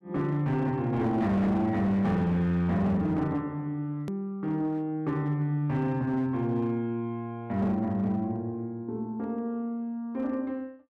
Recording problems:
distorted audio; hard clipping, uneven, signal-to-distortion ratio 12 dB
hard cut with a click; at 4 s

